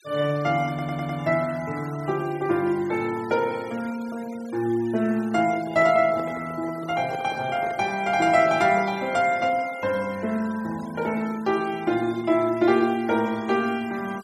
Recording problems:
denoising artefacts; signal-to-artefact ratio 21 dB
audio stuttering; at 0.5 s
microphone handling noise; from 5.5 to 9 s; peak -8 dB vs average level

